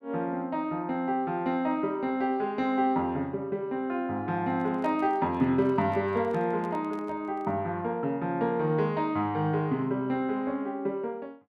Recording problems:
handling noise; from 4.5 to 7.5 s; peak -10 dB vs average level

